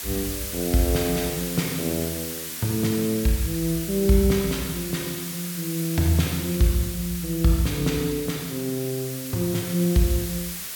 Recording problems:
hiss; slope +2 dB per octave, SNR 7 dB

